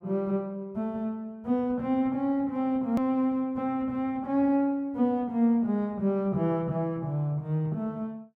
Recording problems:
click at an edit; at 3 s

